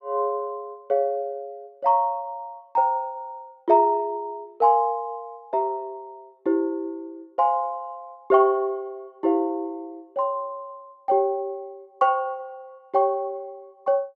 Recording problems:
none

